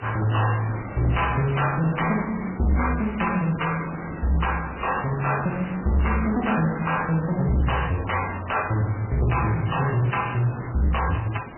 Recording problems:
codec artefacts; MP3, log-spectral distance 12 dB, nothing above 3 kHz
distorted audio; hard clipping, signal-to-distortion ratio 9 dB
background hiss; SNR 12 dB

